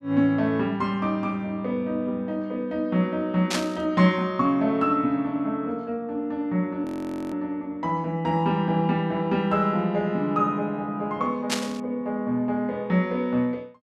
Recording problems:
static burst; at 3.5 s and at 12 s; peak +4 dB vs average level
frozen audio; at 7 s

